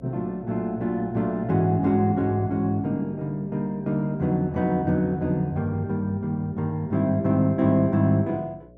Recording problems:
electrical hum; 60 Hz, harmonics up to 660 Hz, SNR 25 dB

